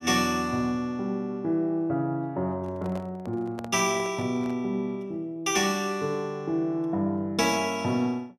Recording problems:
microphone handling noise; from 2.5 to 4.5 s; peak -8 dB vs average level

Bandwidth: 14.5 kHz